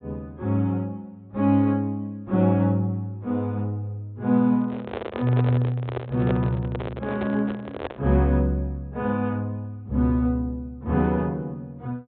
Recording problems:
treble missing; nothing above 4 kHz
microphone handling noise; from 4.5 to 8 s; peak 0 dB vs average level

